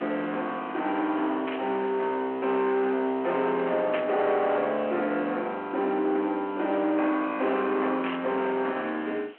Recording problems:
phone line; 240 Hz to 3.2 kHz, G.726
distorted audio; soft clipping, signal-to-distortion ratio 11 dB
background hiss; SNR 24 dB
static burst; at 1.5 s, at 4 s and at 8 s; peak -2 dB vs average level

